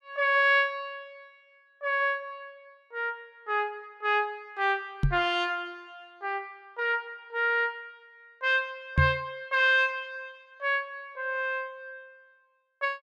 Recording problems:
microphone bump; at 5 s and at 9 s; peak +7 dB vs average level

